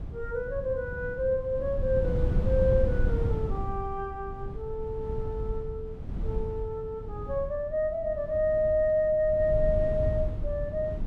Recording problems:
wind on the microphone; below 110 Hz, SNR 5 dB

